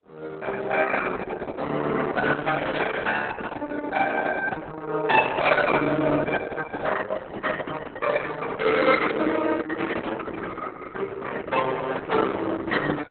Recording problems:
lossy compression; Opus, then Opus, log-spectral distance 5 dB, nothing above 4 kHz

